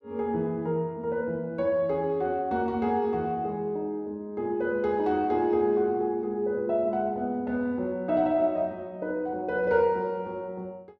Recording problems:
none

